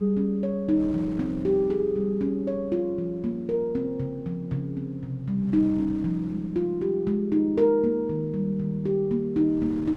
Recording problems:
wind noise; below 400 Hz, SNR 21 dB

